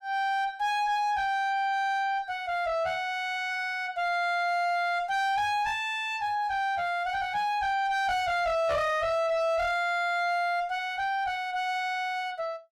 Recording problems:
distorted audio; soft clipping, signal-to-distortion ratio 6 dB

